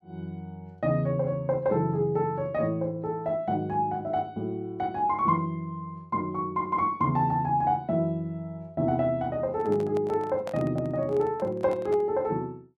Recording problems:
handling noise; from 9.5 to 12 s; peak -6 dB vs average level

